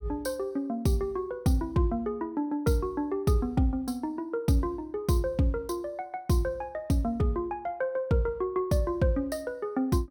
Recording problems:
none

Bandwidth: 17.5 kHz